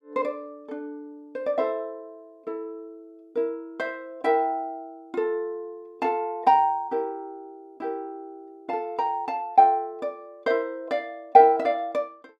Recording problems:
none

